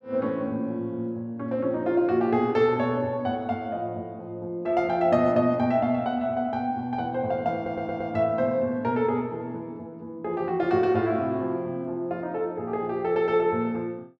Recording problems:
stutter; at 7.5 s

